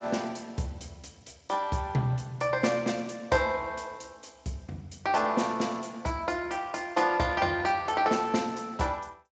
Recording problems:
lossy compression; Speex, log-spectral distance 5 dB, nothing above 7.6 kHz

